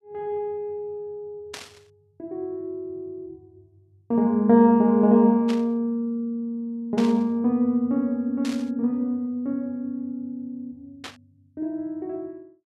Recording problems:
burst of static; 5 times, first at 1.5 s; peak -8 dB vs average level

